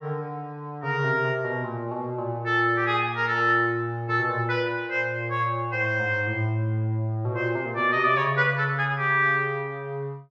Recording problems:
none

